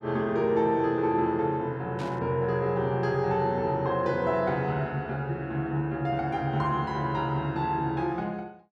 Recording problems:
burst of static; at 2 s; peak -12 dB vs average level

